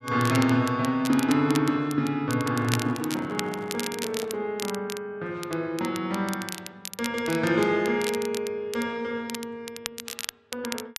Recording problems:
crackle; vinyl, SNR 10 dB
microphone handling noise; from 2.5 to 4.5 s; peak -10 dB vs average level

